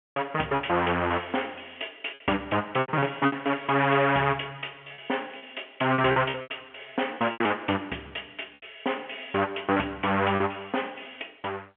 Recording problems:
telephone audio; 260 Hz to 3.3 kHz, G.711
lost packets; 8% of the sound replaced, filled with repeated pitch periods

